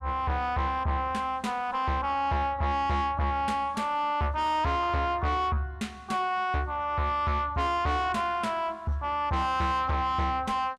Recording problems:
distortion; soft clipping, signal-to-distortion ratio 6 dB

